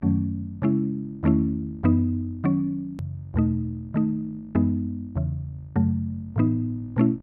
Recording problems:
hum; 50 Hz, harmonics up to 1.2 kHz, SNR 26 dB
hard cut with a click; at 3 s

